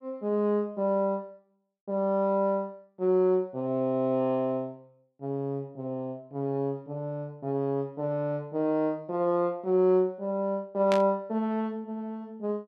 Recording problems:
static burst; at 11 s; peak -1 dB vs average level

